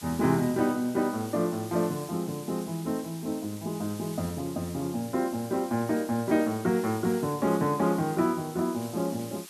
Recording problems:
background hiss; slope +2 dB per octave, SNR 16 dB

